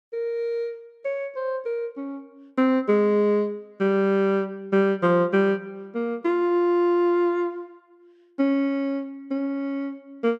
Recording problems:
none

